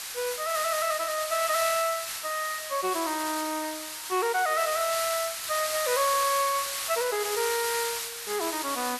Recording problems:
background hiss; SNR 3 dB

